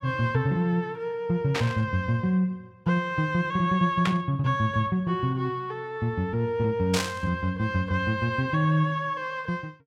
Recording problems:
static burst; at 1.5 s, at 4 s and at 7 s; peak +2 dB vs average level

